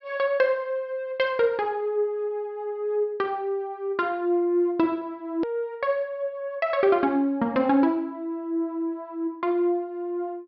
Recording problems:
treble cut off; nothing above 5.5 kHz
edit click; at 5.5 s

